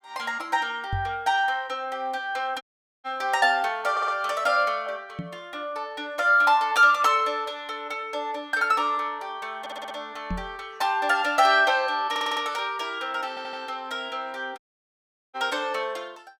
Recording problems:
knock on the microphone; at 1 s, at 5 s and at 10 s; peak -2 dB vs average level
dropout; at 2.5 s and at 15 s for 1 s
audio stuttering; 4 times, first at 4 s

